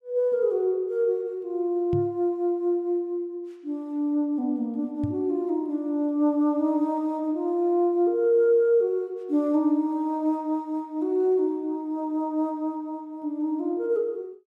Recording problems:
knock on the microphone; at 2 s and at 5 s; peak -1 dB vs average level

